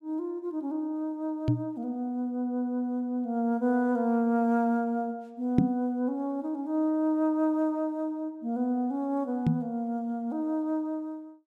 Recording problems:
knock on the microphone; at 1.5 s, at 5.5 s and at 9.5 s; peak +9 dB vs average level

